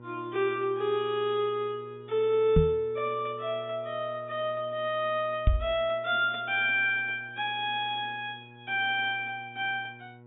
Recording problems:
treble cut off; nothing above 4 kHz
electrical hum; 60 Hz, harmonics up to 1.1 kHz, SNR 21 dB
microphone bump; at 2.5 s and at 5.5 s; peak +8 dB vs average level

